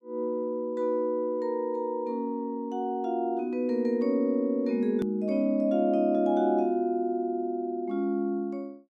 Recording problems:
hard cut with a click; at 5 s

